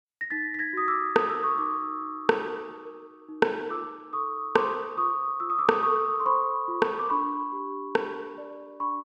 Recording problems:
none

